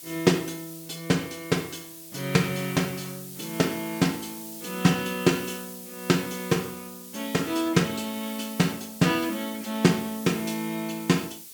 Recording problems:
background hiss; SNR 13 dB

